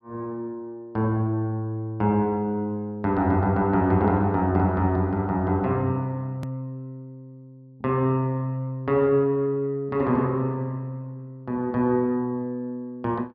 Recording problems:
treble missing; nothing above 5.5 kHz
hard cut with a click; at 6.5 s

